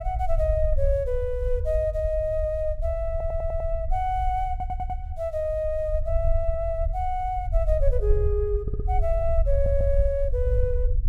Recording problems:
low-frequency rumble; below 64 Hz, SNR 1 dB
stutter; 4 times, first at 3 s

